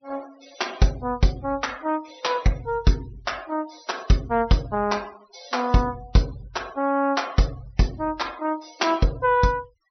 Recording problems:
low-pass filter; nothing above 5.9 kHz
denoising artefacts; signal-to-artefact ratio 23 dB

